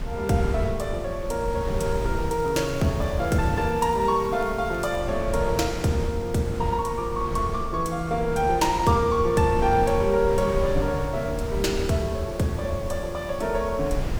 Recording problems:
background hiss; slope -4 dB per octave, SNR 20 dB
wind noise; below 140 Hz, SNR 8 dB
crackle; from 2.5 to 5 s; loose cable, SNR 28 dB

